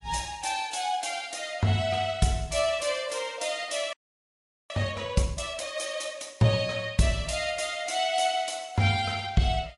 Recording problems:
codec artefacts; MP3, log-spectral distance 4 dB, nothing above 11 kHz
audio freezing; at 4 s for 1 s

